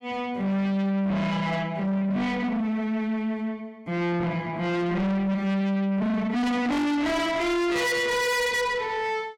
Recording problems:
distortion; soft clipping, signal-to-distortion ratio 6 dB

